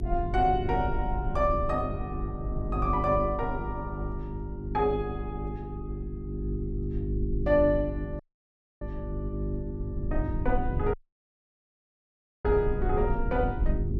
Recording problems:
electrical hum; 50 Hz, harmonics up to 400 Hz, SNR 6 dB
rumble; below 80 Hz, SNR 7 dB
dropout; at 8 s for 0.5 s and at 11 s for 1.5 s

